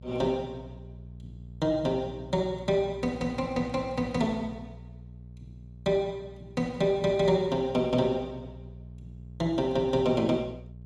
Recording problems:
hum; 60 Hz, harmonics up to 420 Hz, SNR 17 dB

